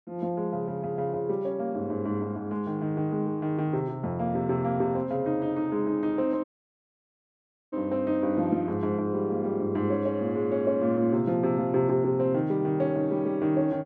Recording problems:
dropout; at 6.5 s for 1.5 s

